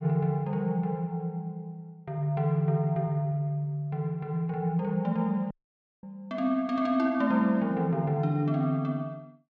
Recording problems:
dropout; at 5.5 s for 0.5 s

